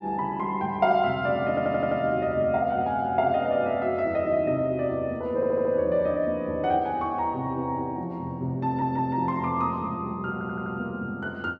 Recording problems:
audio stuttering; 4 times, first at 1.5 s

